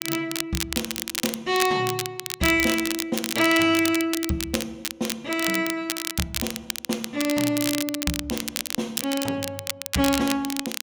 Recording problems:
crackle; vinyl, SNR 4 dB

